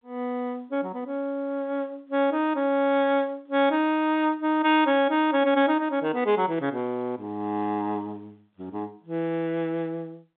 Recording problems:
phone line; 220 Hz to 3.7 kHz, G.711

